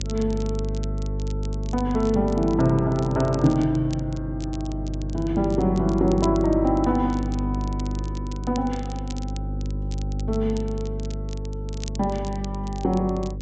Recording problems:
treble missing; nothing above 8 kHz
electrical hum; 50 Hz, harmonics up to 550 Hz, SNR 6 dB
crackle; vinyl, SNR 21 dB

